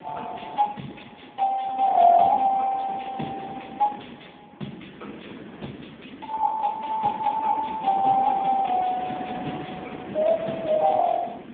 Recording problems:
phone line; 170 Hz to 3.5 kHz, AMR-NB
wind on the microphone; below 610 Hz, SNR 15 dB

